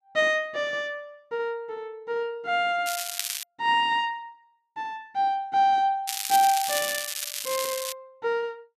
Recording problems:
crackling; at 3 s and from 6 to 8 s; loose cable, SNR 4 dB

